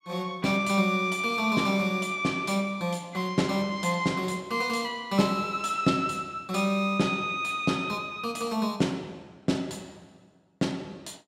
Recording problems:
none

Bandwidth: 16.5 kHz